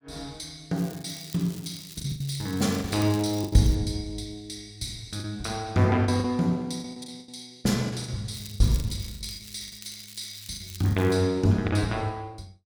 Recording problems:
packet loss; 8% of the sound replaced, filled with the last packet
crackle; from 1 to 4 s and from 8.5 to 11 s; loose cable, SNR 16 dB

